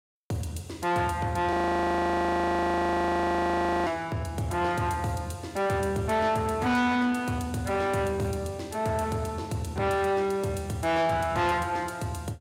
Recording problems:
distortion; soft clipping, signal-to-distortion ratio 10 dB
audio freezing; at 1.5 s for 2.5 s

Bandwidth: 16.5 kHz